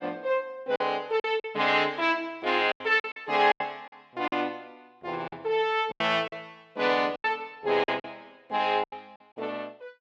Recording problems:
packet loss; 10% of the sound replaced, filled with silence

